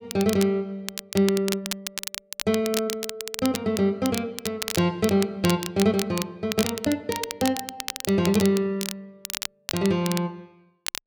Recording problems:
crackle; vinyl, SNR 8 dB

